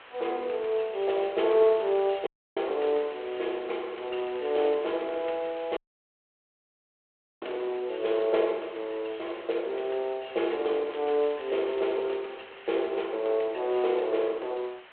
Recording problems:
phone line; 320 Hz to 3.4 kHz, G.726
background hiss; SNR 20 dB
crackling; from 1 to 2 s, from 4 to 6 s and from 11 to 12 s; loose cable, SNR 24 dB
dropout; at 2.5 s and at 6 s for 1.5 s

